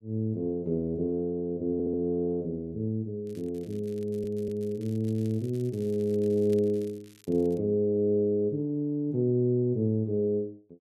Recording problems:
audio stuttering; at 1.5 s and at 4 s
crackle; from 3.5 to 7.5 s; loose cable, SNR 28 dB

